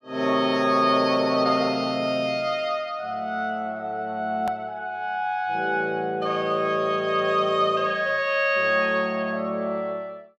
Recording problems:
hard cut with a click; at 4.5 s

